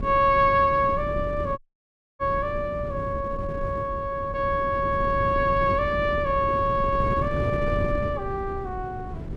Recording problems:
wind on the microphone; below 230 Hz, SNR 8 dB
dropout; at 1.5 s for 0.5 s

